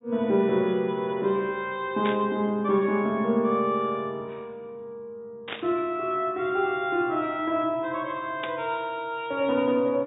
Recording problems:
treble missing; nothing above 4 kHz
static burst; at 2 s, at 5.5 s and at 8.5 s; peak -3 dB vs average level

